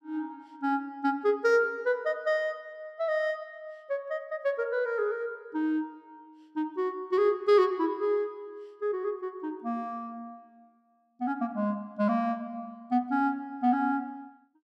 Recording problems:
none

